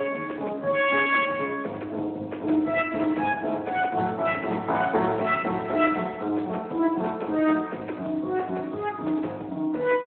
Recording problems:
phone line; 240 Hz to 3.3 kHz, Speex

